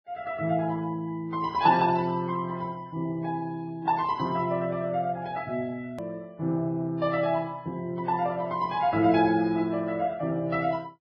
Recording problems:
lossy compression; Vorbis, then AAC, log-spectral distance 2 dB, nothing above 5 kHz
hard cut with a click; at 6 s

